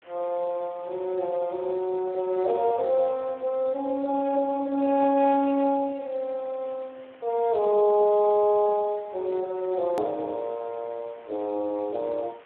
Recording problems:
telephone audio; 240 Hz to 2.8 kHz, Speex
background hiss; SNR 27 dB
click at an edit; at 10 s

